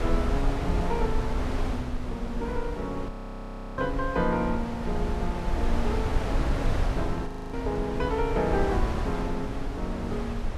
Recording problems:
wind on the microphone; below 130 Hz, SNR 0 dB
audio freezing; at 3 s for 0.5 s and at 7.5 s

